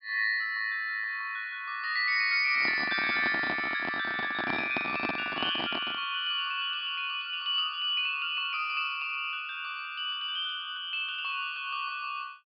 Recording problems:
low-pass filter; nothing above 5.5 kHz
microphone handling noise; from 2.5 to 6 s; peak 0 dB vs average level

